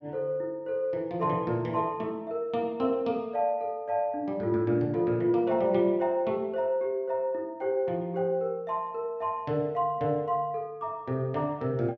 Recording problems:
none

